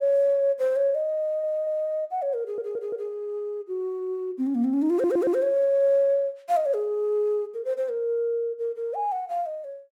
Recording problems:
stutter; at 1 s, at 2.5 s and at 5 s

